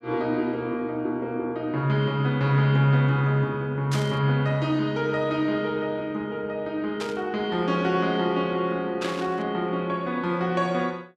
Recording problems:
static burst; at 4 s, at 7 s and at 9 s; peak -4 dB vs average level

